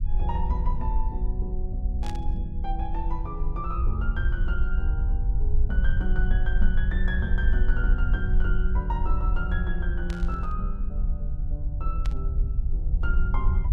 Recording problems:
rumble; below 58 Hz, SNR -8 dB
burst of static; at 2 s, at 10 s and at 12 s; peak -2 dB vs average level

